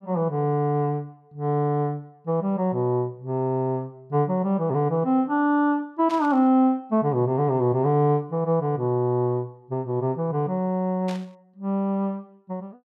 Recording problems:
static burst; at 6 s and at 11 s; peak -11 dB vs average level

